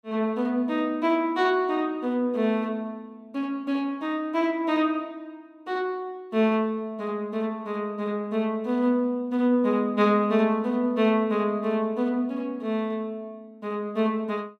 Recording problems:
none

